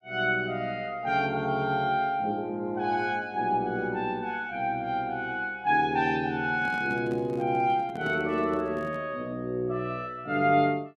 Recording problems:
handling noise; from 6.5 to 9 s; peak -9 dB vs average level

